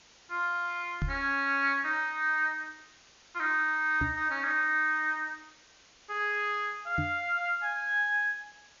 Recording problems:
low-pass filter; nothing above 7 kHz
background hiss; slope 0 dB per octave, SNR 27 dB
microphone bump; at 1 s, at 4 s and at 7 s; peak 0 dB vs average level

